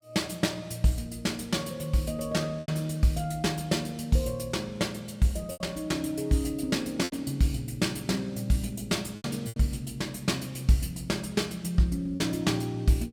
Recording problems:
lost packets; 3% of the sound replaced, filled with repeated pitch periods

